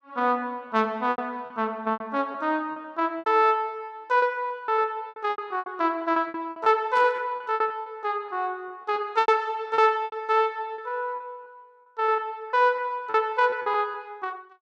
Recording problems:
packet loss; 13% of the sound replaced, filled with repeated pitch periods
burst of static; at 7 s; peak -12 dB vs average level

